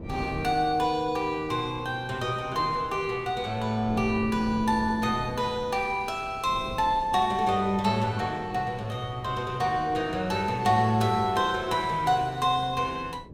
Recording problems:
wind on the microphone; below 340 Hz, SNR 16 dB

